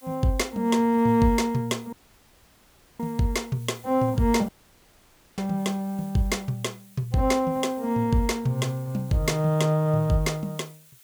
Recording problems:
hiss; slope +2 dB per octave, SNR 25 dB
dropout; at 2 s for 1 s and at 4.5 s for 1 s

